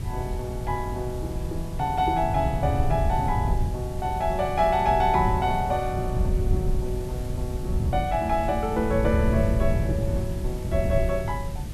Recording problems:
background hiss; slope -4 dB per octave, SNR 18 dB
wind noise; below 110 Hz, SNR 2 dB

